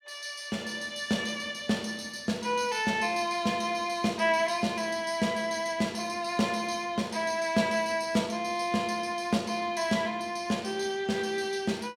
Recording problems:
none

